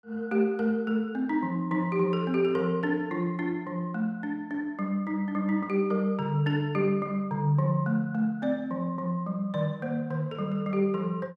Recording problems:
none

